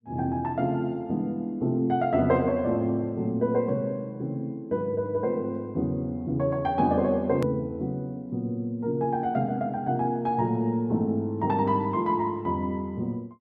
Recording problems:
hard cut with a click; at 7.5 s

